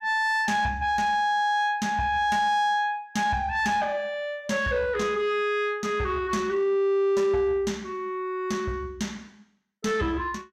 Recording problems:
distortion; soft clipping, signal-to-distortion ratio 12 dB

